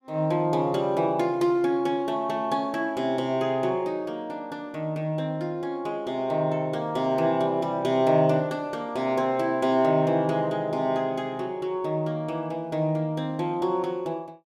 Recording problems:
none

